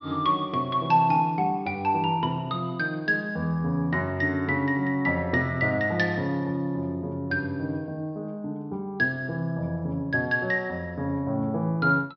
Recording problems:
treble missing; nothing above 5.5 kHz

